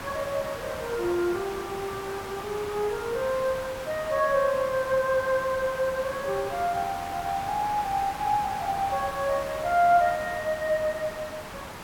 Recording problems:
hiss; SNR 10 dB

